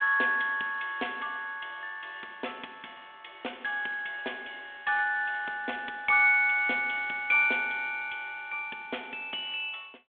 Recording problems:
telephone audio; 280 Hz to 3.6 kHz, G.726

